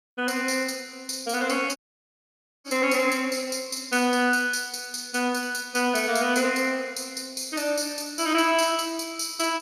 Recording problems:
audio cutting out; at 2 s for 1 s

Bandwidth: 15 kHz